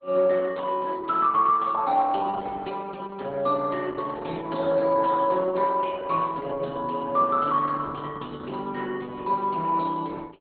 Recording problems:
low-pass filter; nothing above 4.2 kHz
lossy compression; Opus, log-spectral distance 3 dB

